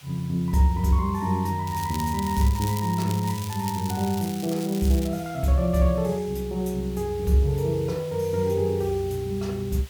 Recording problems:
background hiss; slope 0 dB per octave, SNR 22 dB
crackle; from 1.5 to 5 s; loose cable, SNR 13 dB

